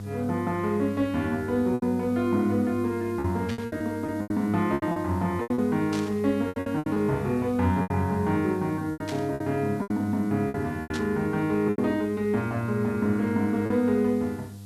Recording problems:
electrical hum; 50 Hz, harmonics up to 700 Hz, SNR 14 dB
hiss; SNR 27 dB
packet loss; 10% of the sound replaced, filled with repeated pitch periods
static burst; 4 times, first at 3.5 s; peak -7 dB vs average level

